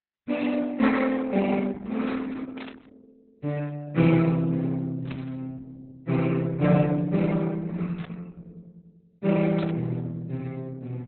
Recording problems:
lossy compression; Opus, then Opus, log-spectral distance 3 dB, nothing above 4 kHz
burst of static; 4 times, first at 2.5 s; peak -10 dB vs average level

